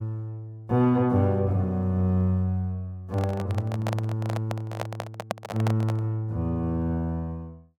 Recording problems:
microphone handling noise; from 3 to 6 s; peak +2 dB vs average level

